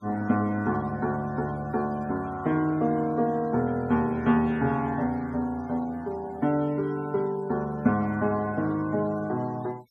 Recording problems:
denoising artefacts; signal-to-artefact ratio 25 dB

